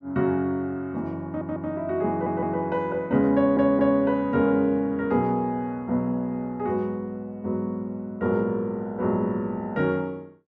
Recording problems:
audio stuttering; at 1.5 s, at 2 s and at 3.5 s

